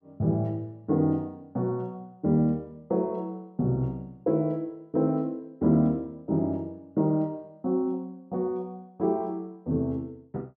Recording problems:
none

